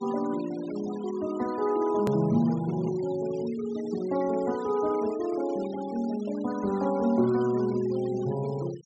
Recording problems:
treble cut off; nothing above 8 kHz
noise reduction artefacts; signal-to-artefact ratio 19 dB
edit click; at 2 s

